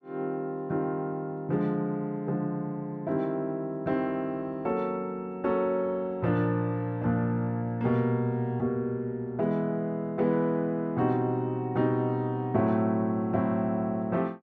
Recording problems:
none

